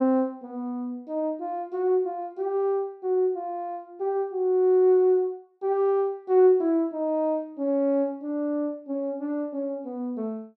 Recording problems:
none

